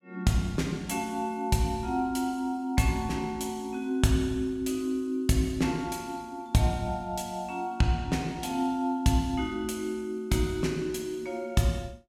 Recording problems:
none

